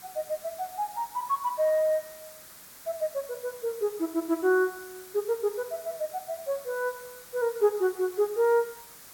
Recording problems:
background hiss; SNR 17 dB

